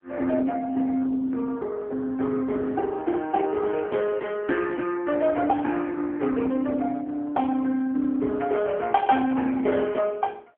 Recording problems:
phone line; 220 Hz to 3.2 kHz, AMR-NB

